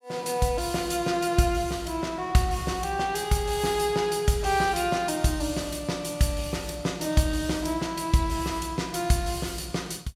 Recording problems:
none

